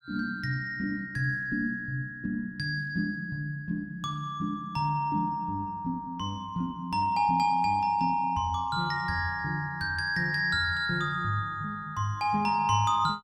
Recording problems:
none

